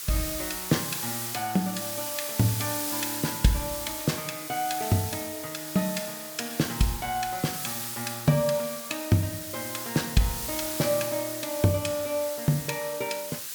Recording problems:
hiss; SNR 4 dB

